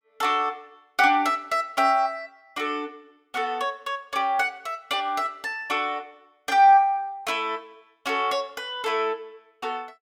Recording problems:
none

